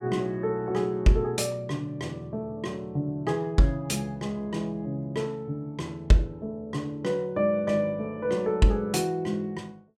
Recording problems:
none

